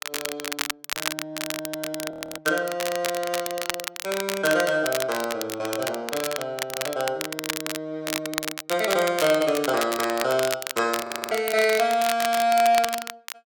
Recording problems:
crackle; vinyl, SNR 6 dB
frozen audio; at 2 s and at 11 s

